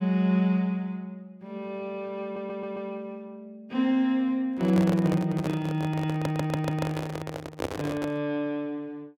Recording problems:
stutter; at 2 s and at 6 s
handling noise; from 4.5 to 8 s; peak +2 dB vs average level

